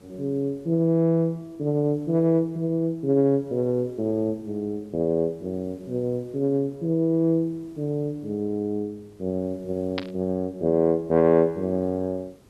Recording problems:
treble cut off; nothing above 5.5 kHz
background hiss; SNR 29 dB
burst of static; at 10 s; peak -2 dB vs average level

